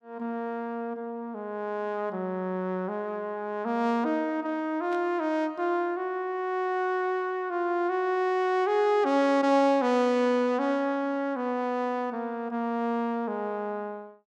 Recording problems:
burst of static; at 5 s; peak -15 dB vs average level

